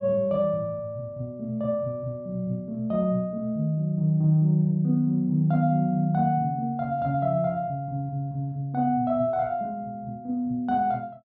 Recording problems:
none

